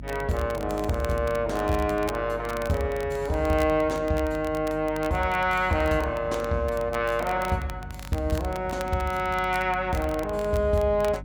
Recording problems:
hum; 50 Hz, harmonics up to 300 Hz, SNR 15 dB
crackling; vinyl, SNR 19 dB

